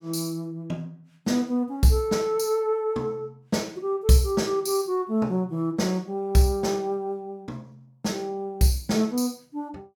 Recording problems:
none

